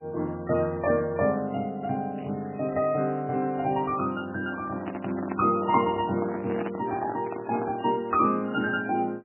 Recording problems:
lossy codec; MP3, log-spectral distance 4 dB, nothing above 2.4 kHz
crackle; at 2 s; loose cable, SNR 24 dB
handling noise; from 4.5 to 8 s; peak -2 dB vs average level

